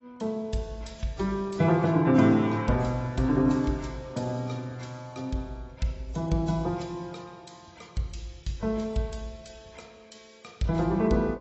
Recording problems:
codec artefacts; AAC, log-spectral distance 4 dB, nothing above 7.8 kHz

